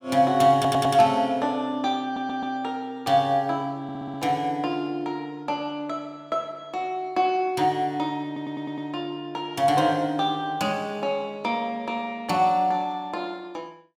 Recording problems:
stutter; 4 times, first at 0.5 s

